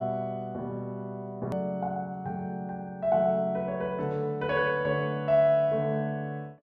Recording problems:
edit click; at 1.5 s

